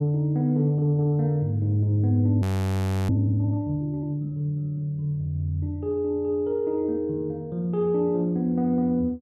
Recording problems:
frozen audio; at 2.5 s for 0.5 s

